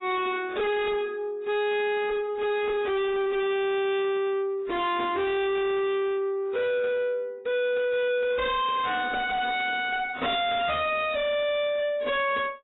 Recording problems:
lossy codec; AAC, log-spectral distance 3 dB, nothing above 3.2 kHz
distorted audio; soft clipping, signal-to-distortion ratio 5 dB

